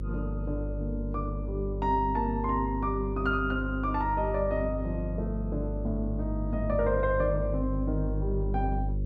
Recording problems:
mains hum; 50 Hz, harmonics up to 550 Hz, SNR 3 dB

